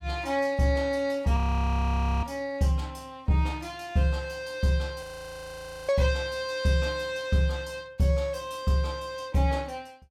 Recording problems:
audio freezing; at 1.5 s for 1 s and at 5 s for 1 s

